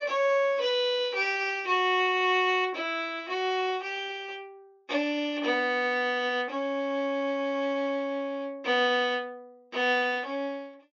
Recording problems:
low-pass filter; nothing above 7.2 kHz

